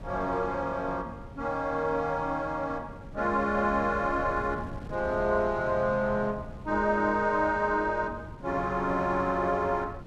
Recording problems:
wind on the microphone; below 240 Hz, SNR 15 dB

